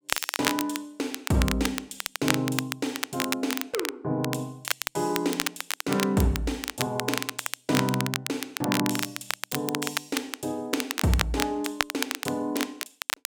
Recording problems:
crackling; vinyl, SNR 2 dB

